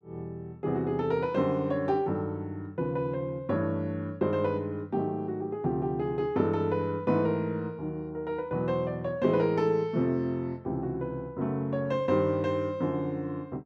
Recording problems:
none

